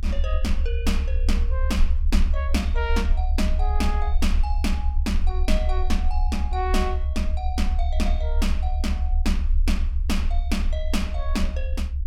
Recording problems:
low-frequency rumble; below 66 Hz, strongest tone 28 Hz, SNR -5 dB

